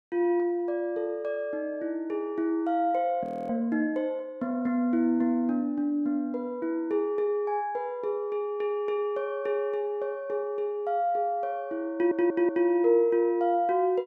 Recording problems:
frozen audio; at 3 s
stutter; at 12 s

